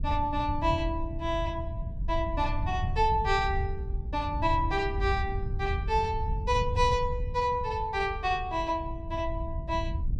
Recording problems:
wind on the microphone; below 94 Hz, SNR 5 dB

